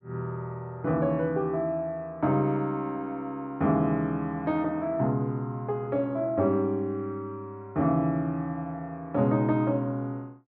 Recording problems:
none

